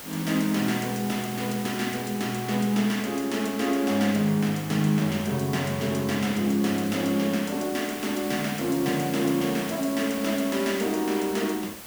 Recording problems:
hiss; slope -2 dB per octave, SNR 13 dB

